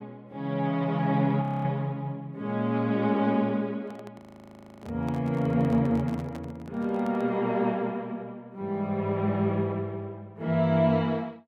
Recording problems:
frozen audio; at 1.5 s and at 4 s for 0.5 s
microphone handling noise; from 4 to 7.5 s; peak -11 dB vs average level

